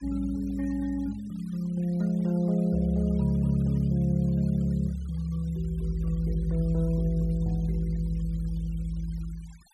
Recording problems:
noise reduction artefacts; signal-to-artefact ratio 28 dB

